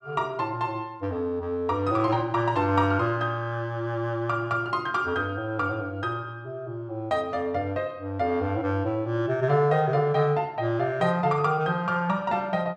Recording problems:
none

